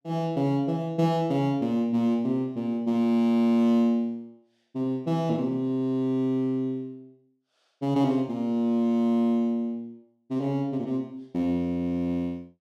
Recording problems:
none

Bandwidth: 13.5 kHz